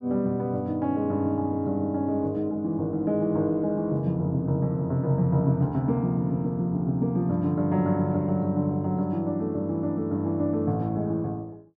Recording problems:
none

